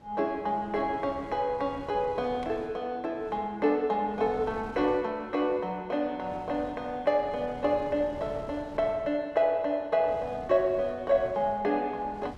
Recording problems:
wind on the microphone; below 600 Hz, SNR 19 dB

